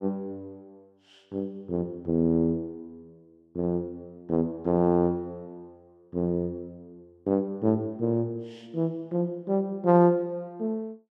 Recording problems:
none

